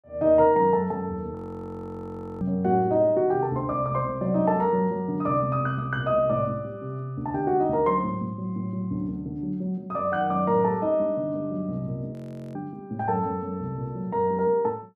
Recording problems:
frozen audio; at 1.5 s for 1 s and at 12 s

